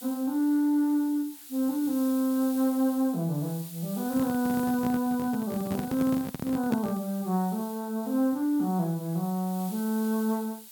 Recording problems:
background hiss; slope +2 dB per octave, SNR 15 dB
handling noise; from 4 to 7 s; peak +1 dB vs average level

